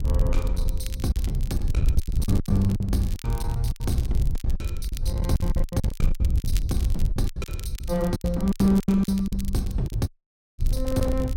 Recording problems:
distorted audio; hard clipping, uneven, signal-to-distortion ratio 11 dB
wind on the microphone; below 78 Hz, SNR 2 dB
crackle; vinyl, SNR 17 dB
lost packets; 14% of the sound replaced, filled with silence
dropout; at 10 s for 0.5 s

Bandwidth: 16 kHz